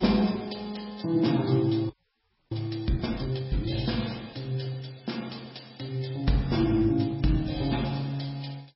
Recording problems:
codec artefacts; MP3, log-spectral distance 7 dB, nothing above 5.5 kHz
frozen audio; at 2 s for 0.5 s

